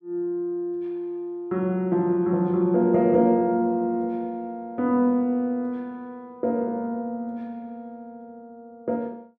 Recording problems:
none

